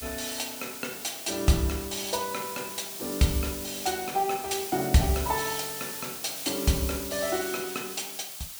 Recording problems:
background hiss; slope +2 dB per octave, SNR 6 dB

